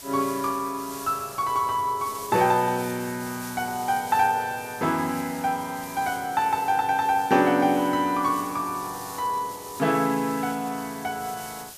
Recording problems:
hiss; SNR 15 dB

